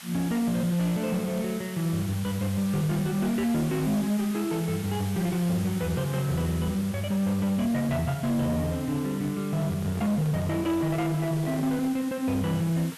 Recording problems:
distortion; soft clipping, signal-to-distortion ratio 11 dB
background hiss; SNR 15 dB
microphone handling noise; from 9.5 to 12 s; peak -8 dB vs average level

